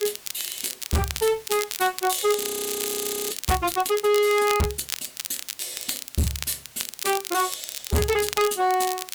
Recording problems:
distorted audio; hard clipping, signal-to-distortion ratio 6 dB
background hiss; slope 0 dB per octave, SNR 21 dB
crackling; vinyl, SNR 7 dB
frozen audio; at 2.5 s for 1 s

